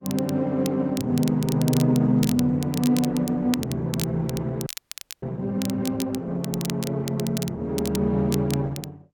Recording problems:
codec artefacts; Opus, log-spectral distance 2 dB
crackle; vinyl, SNR 12 dB
audio freezing; at 4.5 s for 0.5 s

